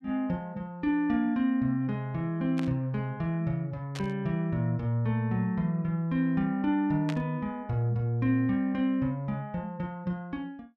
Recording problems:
burst of static; at 2.5 s, at 4 s and at 7 s; peak -5 dB vs average level

